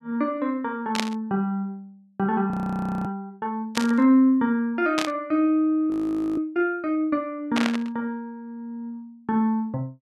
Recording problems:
burst of static; 4 times, first at 1 s; peak +3 dB vs average level
audio freezing; at 2.5 s for 0.5 s and at 6 s

